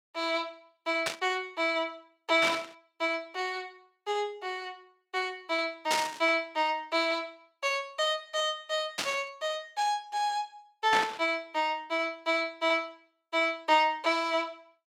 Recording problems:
burst of static; 5 times, first at 1 s; peak +4 dB vs average level

